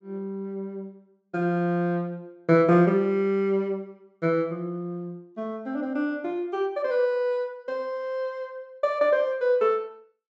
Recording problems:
treble missing; nothing above 8 kHz

